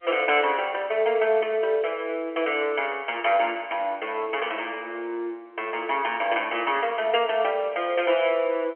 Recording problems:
phone line; 280 Hz to 3.2 kHz, G.711

